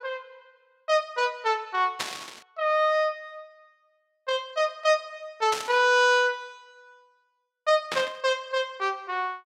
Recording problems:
static burst; at 2 s, at 5.5 s and at 8 s; peak 0 dB vs average level

